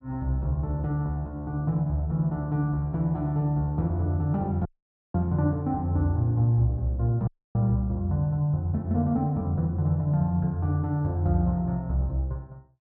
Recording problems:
audio cutting out; at 4.5 s and at 7.5 s

